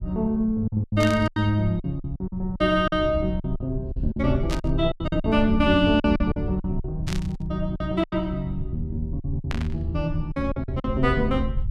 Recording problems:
rumble; below 88 Hz, SNR 8 dB
packet loss; 12% of the sound replaced, filled with silence
burst of static; 4 times, first at 1 s; peak -3 dB vs average level

